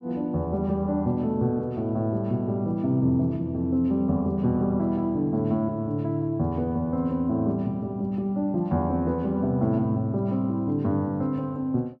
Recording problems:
none

